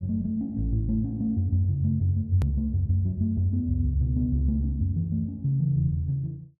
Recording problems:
hard cut with a click; at 2.5 s

